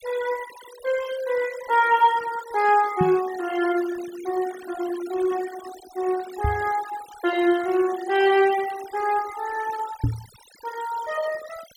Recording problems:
noise reduction artefacts; signal-to-artefact ratio 17 dB
knock on the microphone; at 3 s, at 6.5 s and at 10 s; peak +4 dB vs average level

